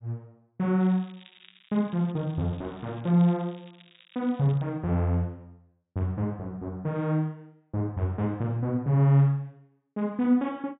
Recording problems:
low-pass filter; nothing above 4 kHz
crackling; from 1 to 4.5 s; loose cable, SNR 27 dB

